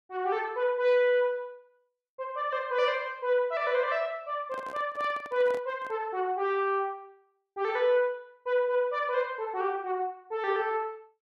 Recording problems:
handling noise; from 4.5 to 6 s; peak -10 dB vs average level

